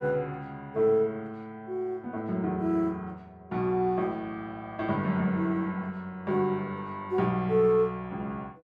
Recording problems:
none

